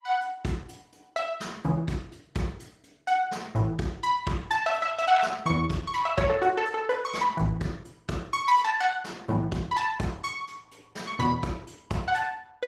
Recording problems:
lossy compression; Opus, log-spectral distance 4 dB, nothing above 15.5 kHz

